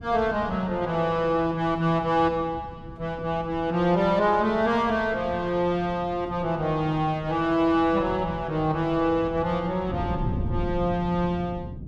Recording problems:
wind noise; below 190 Hz, SNR 13 dB

